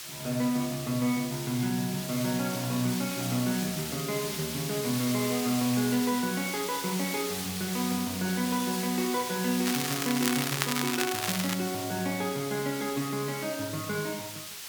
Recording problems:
hiss; slope +3 dB per octave, SNR 5 dB
crackling; from 9.5 to 12 s; loose cable, SNR 1 dB

